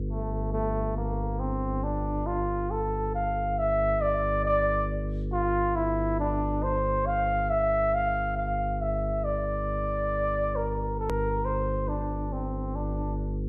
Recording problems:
electrical hum; 50 Hz, harmonics up to 500 Hz, SNR 4 dB
click at an edit; at 11 s

